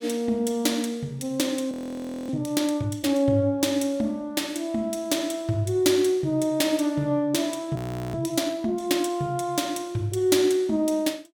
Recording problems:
frozen audio; at 1.5 s for 0.5 s and at 8 s

